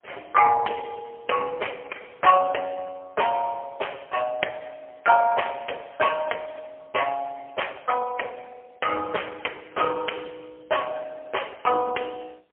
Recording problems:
phone line; 370 Hz to 3.2 kHz, AMR-NB, then MP3

